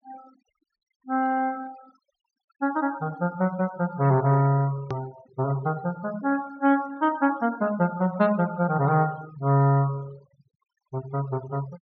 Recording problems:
low-pass filter; nothing above 6.5 kHz
denoising artefacts; signal-to-artefact ratio 22 dB
hard cut with a click; at 5 s

